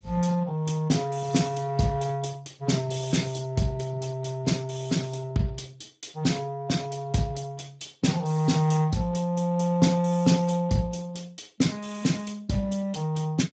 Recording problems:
codec artefacts; Speex, log-spectral distance 4 dB, nothing above 7.6 kHz

